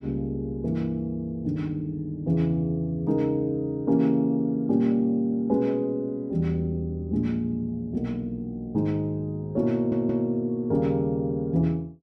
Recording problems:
audio stuttering; at 10 s

